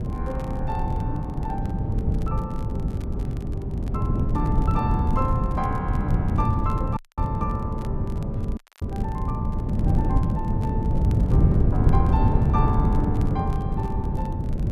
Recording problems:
wind on the microphone; below 170 Hz, SNR -7 dB
crackling; vinyl, SNR 22 dB
dropout; at 7 s and at 8.5 s

